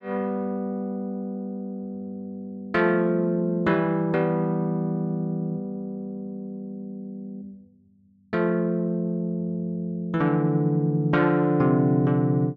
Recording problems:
none

